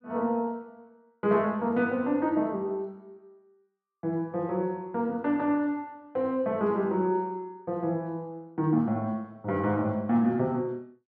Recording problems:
none

